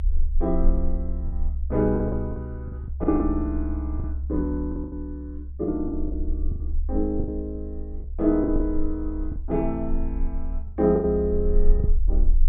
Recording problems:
treble cut off; nothing above 4 kHz
low-frequency rumble; below 66 Hz, strongest tone 20 Hz, SNR 3 dB
lost packets; 9% of the sound replaced, filled with the last packet

